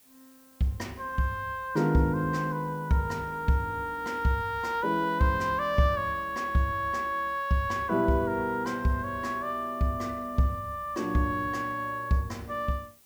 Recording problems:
hiss; slope -1 dB per octave, SNR 27 dB

